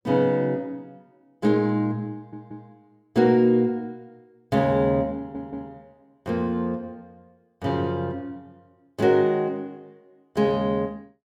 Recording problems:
audio stuttering; at 2 s and at 5 s

